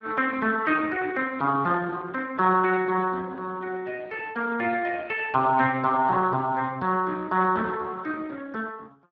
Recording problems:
lossy compression; Speex, log-spectral distance 3 dB

